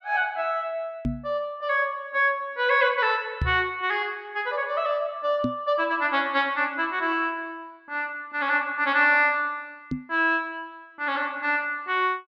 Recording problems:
knock on the microphone; 4 times, first at 1 s; peak +1 dB vs average level

